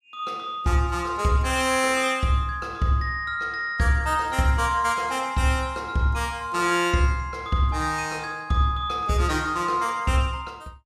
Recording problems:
none

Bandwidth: 15.5 kHz